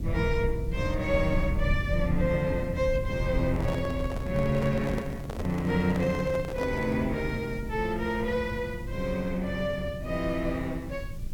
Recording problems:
hiss; slope +2 dB per octave, SNR 27 dB
rumble; below 110 Hz, SNR 6 dB
microphone handling noise; from 3.5 to 7 s; peak -3 dB vs average level

